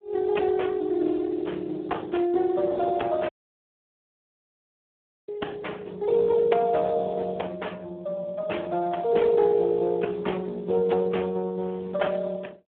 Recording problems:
phone line; 240 Hz to 3.3 kHz, Speex
audio cutting out; at 3.5 s for 2 s

